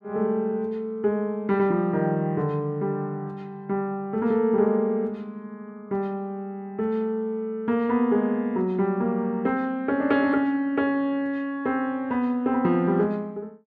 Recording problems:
none

